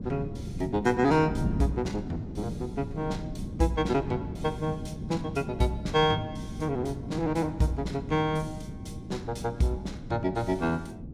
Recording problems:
wind noise; below 240 Hz, SNR 8 dB

